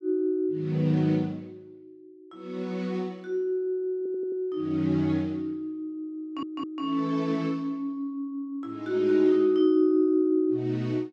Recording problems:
audio stuttering; at 4 s and at 6 s

